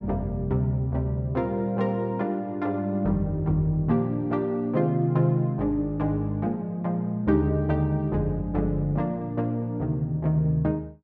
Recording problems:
none

